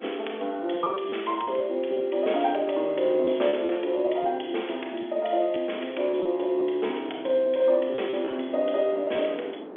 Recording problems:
telephone audio; 260 Hz to 3.5 kHz, G.711
wind noise; below 580 Hz, SNR 20 dB
lost packets; 5% of the sound replaced, filled with repeated pitch periods

